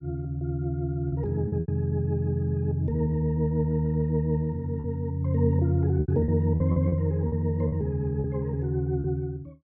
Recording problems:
lost packets; 6% of the sound replaced, filled with repeated pitch periods

